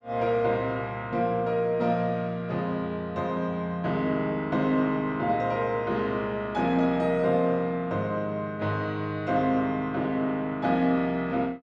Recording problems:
none

